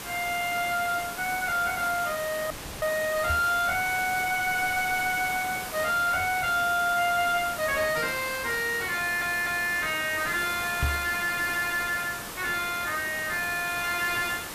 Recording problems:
distorted audio; soft clipping, signal-to-distortion ratio 7 dB
hiss; slope -3 dB per octave, SNR 9 dB
audio cutting out; at 2.5 s
microphone thump; at 3.5 s and at 11 s; peak +3 dB vs average level
audio stuttering; at 9 s

